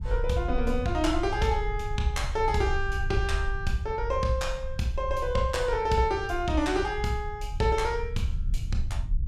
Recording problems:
rumble; below 68 Hz, SNR 6 dB

